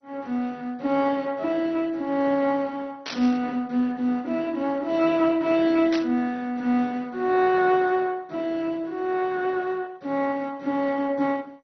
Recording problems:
lossy compression; MP2, log-spectral distance 2 dB
static burst; at 3 s and at 6 s; peak -4 dB vs average level

